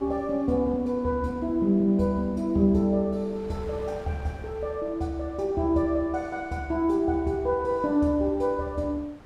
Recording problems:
wind noise; below 840 Hz, SNR 23 dB

